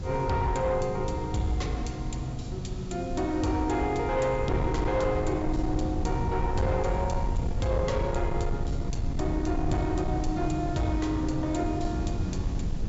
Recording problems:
treble cut off; nothing above 8 kHz
distortion; soft clipping, signal-to-distortion ratio 11 dB
hiss; SNR 24 dB
low-frequency rumble; below 130 Hz, SNR 4 dB

